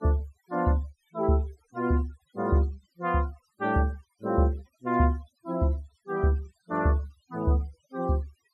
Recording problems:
noise reduction artefacts; signal-to-artefact ratio 26 dB

